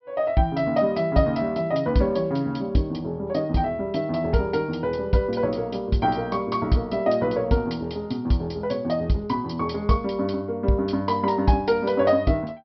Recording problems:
treble cut off; nothing above 5.6 kHz

